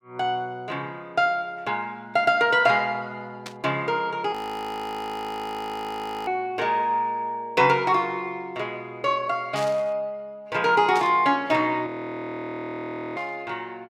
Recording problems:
static burst; 4 times, first at 3.5 s; peak -6 dB vs average level
frozen audio; at 4.5 s for 2 s and at 12 s for 1.5 s

